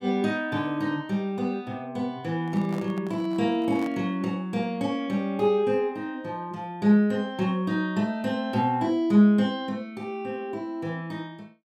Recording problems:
microphone handling noise; from 2.5 to 4 s; peak -10 dB vs average level

